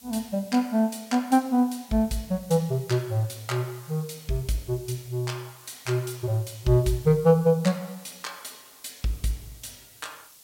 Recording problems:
background hiss; SNR 22 dB

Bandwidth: 16.5 kHz